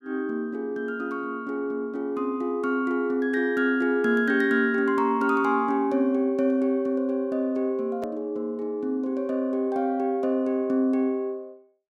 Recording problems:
edit click; at 8 s

